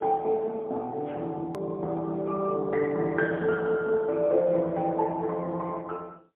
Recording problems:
telephone audio; 220 Hz to 3.2 kHz, AMR-NB, then MP3
hard cut with a click; at 1.5 s

